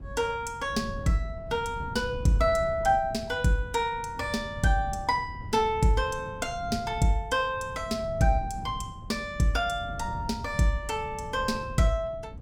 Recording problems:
wind on the microphone; below 160 Hz, SNR 12 dB

